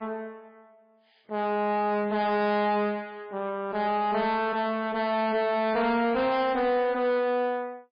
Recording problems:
lossy compression; MP3, log-spectral distance 2 dB, nothing above 4.2 kHz
distortion; soft clipping, signal-to-distortion ratio 7 dB

